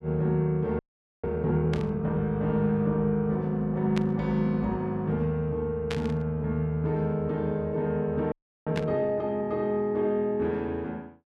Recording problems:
audio freezing; at 1 s and at 8.5 s
static burst; 4 times, first at 1.5 s; peak -3 dB vs average level

